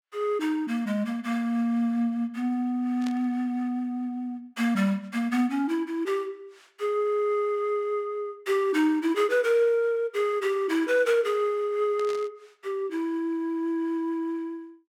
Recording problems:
static burst; at 3 s and at 12 s; peak -10 dB vs average level

